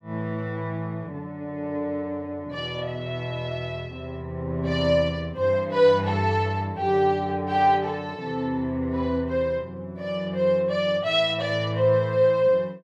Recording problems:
none

